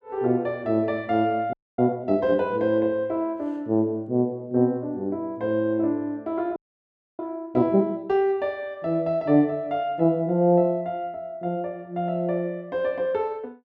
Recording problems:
frozen audio; at 1.5 s and at 6.5 s for 0.5 s

